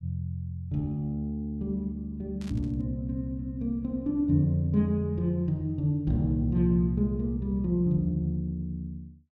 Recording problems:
burst of static; at 2.5 s; peak -15 dB vs average level

